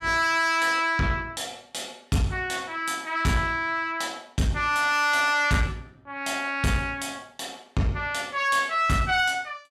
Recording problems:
distortion; soft clipping, signal-to-distortion ratio 11 dB

